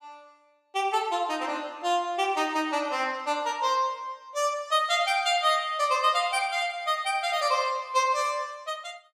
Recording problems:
none

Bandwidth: 14.5 kHz